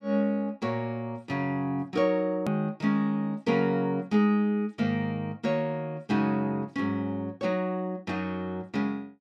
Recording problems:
click at an edit; at 2.5 s

